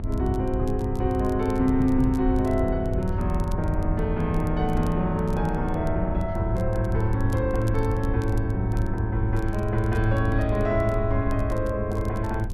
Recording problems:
electrical hum; 50 Hz, harmonics up to 900 Hz, SNR 10 dB
wind noise; below 78 Hz, SNR 5 dB
crackle; vinyl, SNR 27 dB

